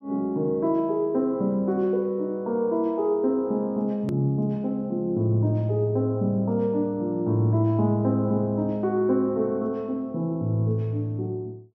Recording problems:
hard cut with a click; at 4 s

